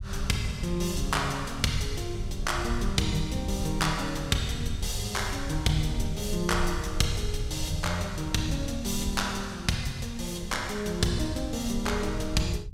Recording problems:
rumble; below 84 Hz, SNR 7 dB

